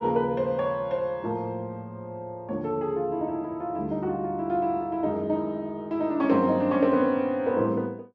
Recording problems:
none

